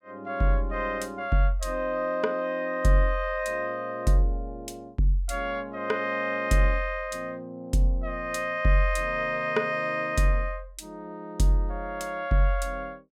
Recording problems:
none

